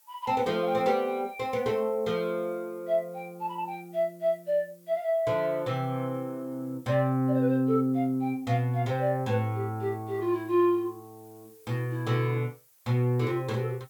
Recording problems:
background hiss; slope 0 dB per octave, SNR 29 dB

